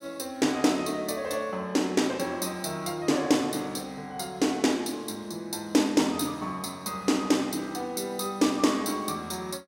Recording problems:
none

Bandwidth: 16.5 kHz